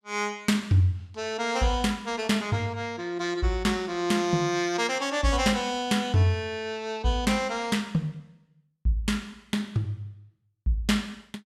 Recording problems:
none

